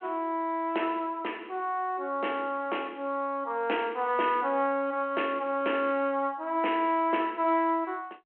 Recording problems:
telephone audio; 280 Hz to 3.3 kHz, G.726

